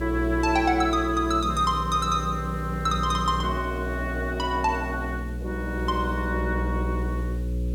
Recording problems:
electrical hum; 60 Hz, harmonics up to 540 Hz, SNR 6 dB
hiss; slope -1 dB per octave, SNR 26 dB

